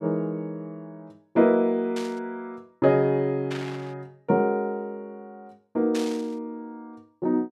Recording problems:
burst of static; at 2 s, at 3.5 s and at 6 s; peak -6 dB vs average level

